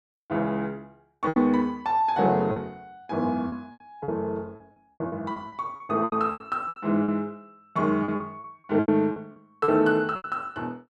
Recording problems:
lost packets; 12% of the sound replaced, filled with repeated pitch periods

